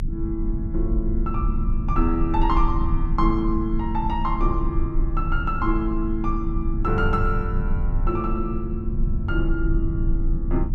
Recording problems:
rumble; below 60 Hz, strongest tone 28 Hz, SNR 0 dB

